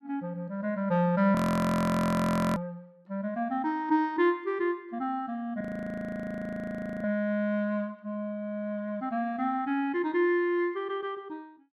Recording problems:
audio freezing; at 1.5 s for 1 s and at 5.5 s for 1.5 s

